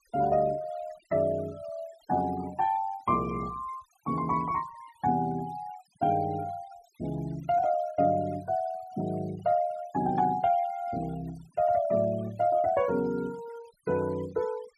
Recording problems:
noise reduction artefacts; signal-to-artefact ratio 22 dB

